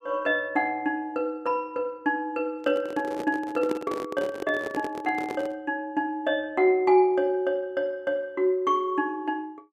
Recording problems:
microphone handling noise; from 2.5 to 5.5 s; peak -1 dB vs average level

